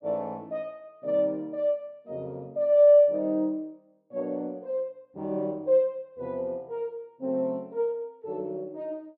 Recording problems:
none

